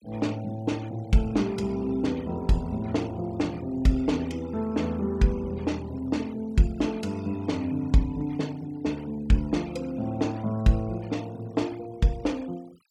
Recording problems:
denoising artefacts; signal-to-artefact ratio 24 dB

